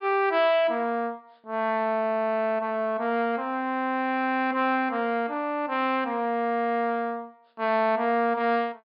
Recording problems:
treble cut off; nothing above 5.5 kHz

